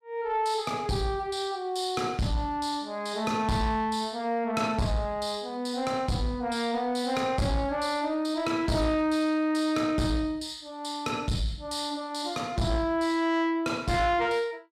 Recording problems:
distorted audio; soft clipping, signal-to-distortion ratio 12 dB

